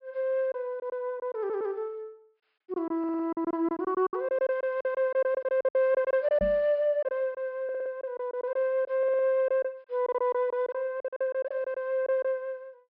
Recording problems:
treble missing; nothing above 5.5 kHz
lost packets; 13% of the sound replaced, filled with silence
stutter; 4 times, first at 1.5 s
microphone thump; at 6.5 s; peak -2 dB vs average level

